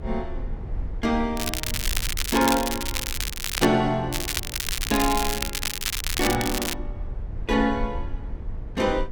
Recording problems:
hum; 50 Hz, harmonics up to 500 Hz, SNR 24 dB
rumble; below 66 Hz, SNR 10 dB
crackling; from 1.5 to 3.5 s and from 4 to 6.5 s; loose cable, SNR 3 dB

